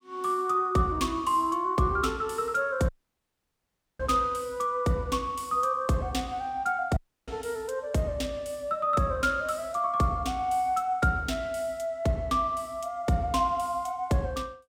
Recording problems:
dropout; at 3 s for 1 s and at 7 s

